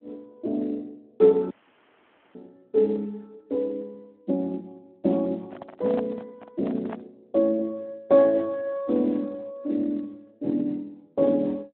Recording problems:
phone line; 220 Hz to 2.2 kHz, Speex
dropout; at 1.5 s for 1 s
handling noise; from 5.5 to 7 s; peak -4 dB vs average level

